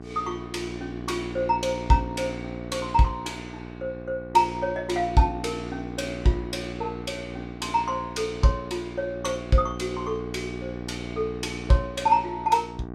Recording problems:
hum; 60 Hz, harmonics up to 1.6 kHz, SNR 10 dB

